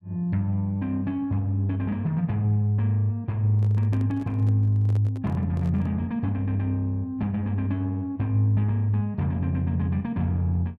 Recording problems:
microphone handling noise; from 3.5 to 6 s; peak -10 dB vs average level

